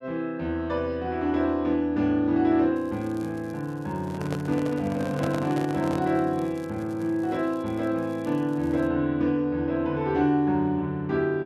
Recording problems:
crackling; from 3 to 4.5 s and from 5 to 9 s; loose cable, SNR 30 dB
handling noise; from 4 to 6 s; peak -2 dB vs average level

